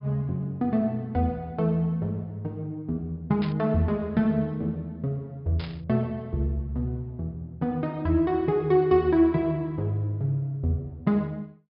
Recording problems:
low-pass filter; nothing above 5.5 kHz
static burst; at 3.5 s and at 5.5 s; peak -8 dB vs average level

